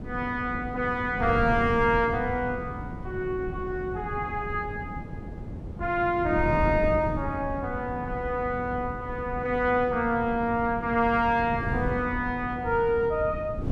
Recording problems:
wind on the microphone; below 230 Hz, SNR 9 dB

